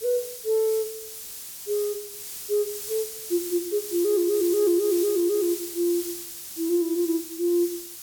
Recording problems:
background hiss; SNR 9 dB

